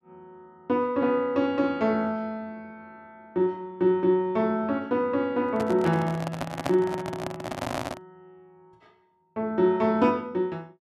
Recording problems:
microphone handling noise; from 5.5 to 8 s; peak 0 dB vs average level

